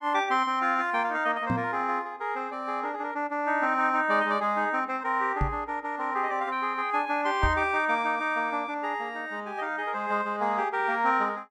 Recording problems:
microphone thump; at 1.5 s, at 5.5 s and at 7.5 s; peak +2 dB vs average level

